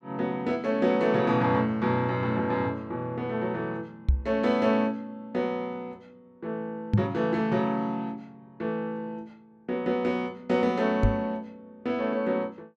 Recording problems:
knock on the microphone; at 4 s, at 7 s and at 11 s; peak +9 dB vs average level

